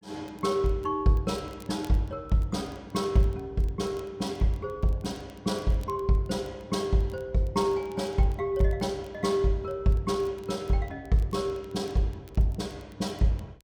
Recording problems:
crackling; vinyl, SNR 29 dB

